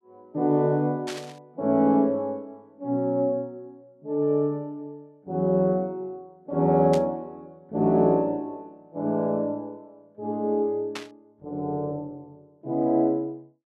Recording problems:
static burst; at 1 s, at 7 s and at 11 s; peak -5 dB vs average level

